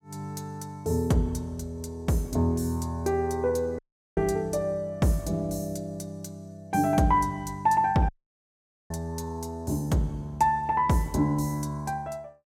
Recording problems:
audio cutting out; at 4 s and at 8 s for 1 s

